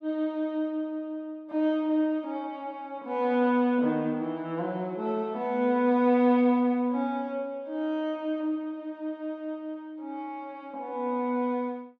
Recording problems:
none

